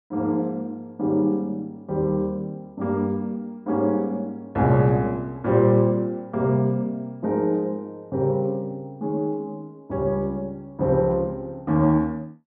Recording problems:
none

